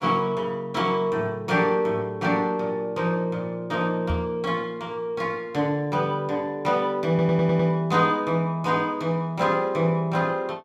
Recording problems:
knock on the microphone; at 4 s; peak 0 dB vs average level
audio stuttering; at 7 s

